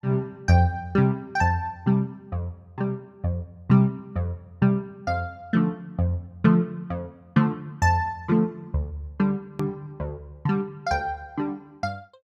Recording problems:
click at an edit; at 9.5 s

